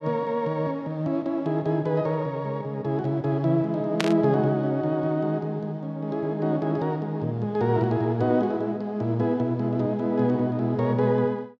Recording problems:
burst of static; at 4 s; peak +3 dB vs average level

